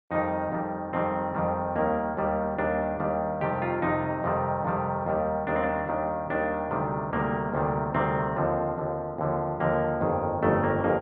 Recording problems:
lossy compression; Opus, log-spectral distance 2 dB

